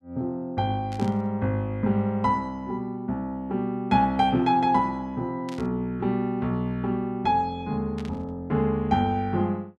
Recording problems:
burst of static; at 1 s, at 5.5 s and at 8 s; peak -13 dB vs average level

